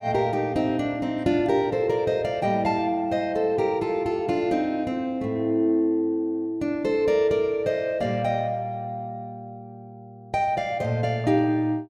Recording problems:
none

